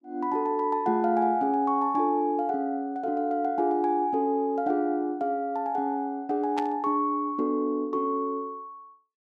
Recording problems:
burst of static; at 6.5 s; peak -7 dB vs average level

